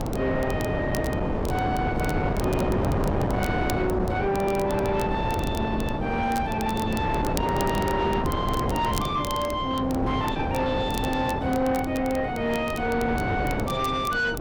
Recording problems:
distorted audio; soft clipping, signal-to-distortion ratio 12 dB
wind on the microphone; below 600 Hz, SNR 1 dB
crackle; vinyl, SNR 16 dB

